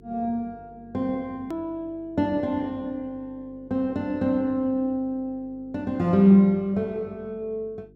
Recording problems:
hum; 50 Hz, harmonics up to 450 Hz, SNR 26 dB
hard cut with a click; at 1.5 s

